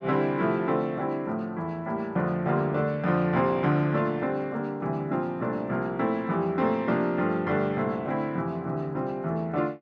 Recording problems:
none

